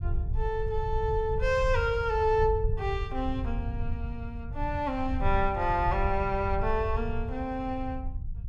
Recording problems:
rumble; below 84 Hz, SNR 5 dB

